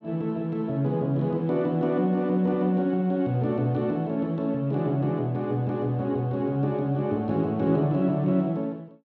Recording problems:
none

